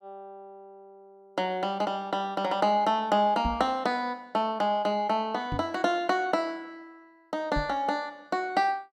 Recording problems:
microphone bump; at 3.5 s, at 5.5 s and at 7.5 s; peak 0 dB vs average level

